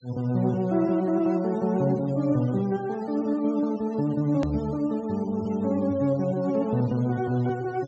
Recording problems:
treble missing; nothing above 8 kHz
denoising artefacts; signal-to-artefact ratio 24 dB
click at an edit; at 4.5 s

